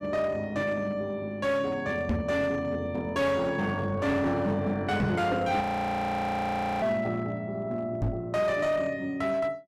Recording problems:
distortion; hard clipping, uneven, signal-to-distortion ratio 12 dB
microphone bump; at 2 s, at 5 s and at 8 s; peak +5 dB vs average level
audio freezing; at 5.5 s for 1 s

